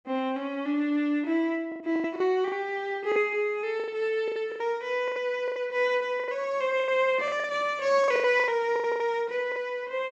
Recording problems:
lost packets; 13% of the sound replaced, filled with the last packet

